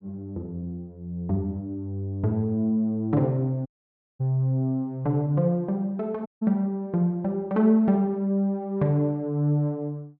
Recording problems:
dropout; at 3.5 s for 0.5 s and at 6.5 s

